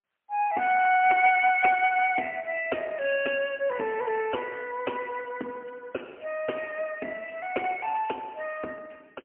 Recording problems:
telephone audio; 240 Hz to 3.1 kHz, AMR-NB, then MP3

